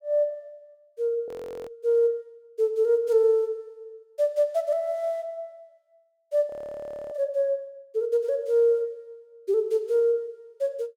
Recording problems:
frozen audio; at 1.5 s and at 6.5 s for 0.5 s

